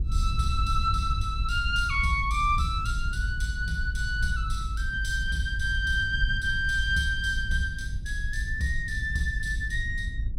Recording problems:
low-frequency rumble; below 70 Hz, SNR 4 dB

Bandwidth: 16.5 kHz